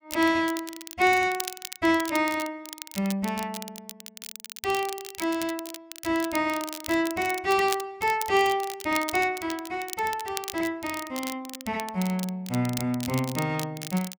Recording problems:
crackling; vinyl, SNR 11 dB

